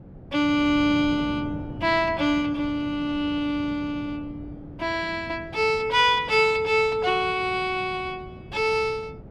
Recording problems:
wind noise; below 290 Hz, SNR 16 dB

